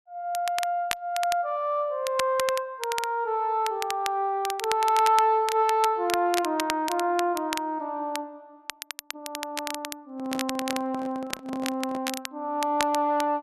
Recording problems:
crackling; vinyl, SNR 9 dB
microphone handling noise; from 10 to 12 s; peak -7 dB vs average level

